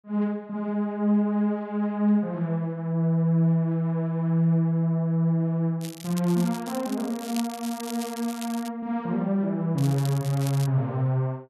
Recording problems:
crackle; from 6 to 8.5 s and at 10 s; loose cable, SNR 15 dB

